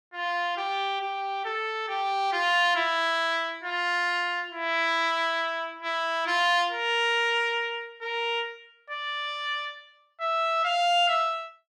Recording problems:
none

